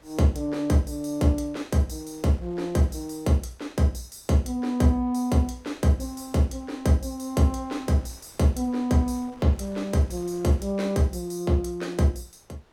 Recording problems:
wind noise; below 1.6 kHz, SNR 29 dB

